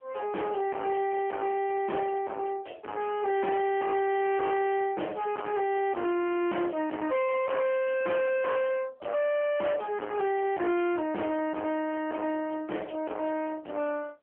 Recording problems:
phone line; 540 Hz to 3.1 kHz, AMR-NB
distortion; soft clipping, signal-to-distortion ratio 6 dB

